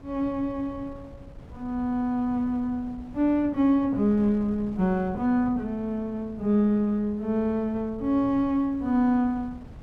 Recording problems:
wind on the microphone; below 200 Hz, SNR 20 dB

